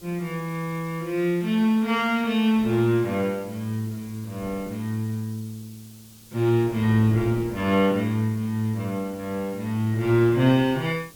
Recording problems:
hiss; SNR 24 dB
wind on the microphone; below 420 Hz, SNR 22 dB

